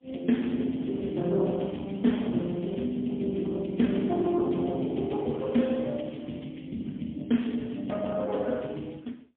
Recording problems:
telephone audio; 130 Hz to 3.4 kHz, AMR-NB, then MP3

